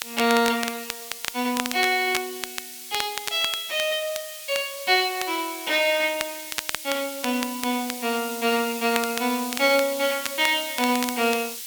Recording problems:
hiss; SNR 10 dB
crackle; vinyl, SNR 10 dB

